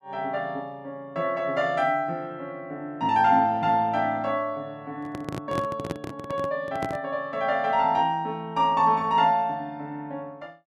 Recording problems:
microphone handling noise; from 5 to 7 s; peak -1 dB vs average level

